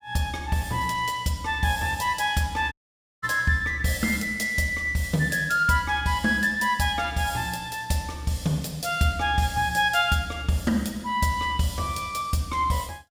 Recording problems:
audio cutting out; at 2.5 s for 0.5 s

